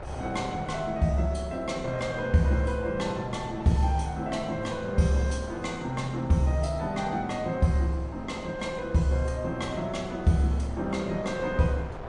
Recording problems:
lossy codec; MP3, log-spectral distance 2 dB, nothing above 9.2 kHz
wind noise; below 780 Hz, SNR 13 dB

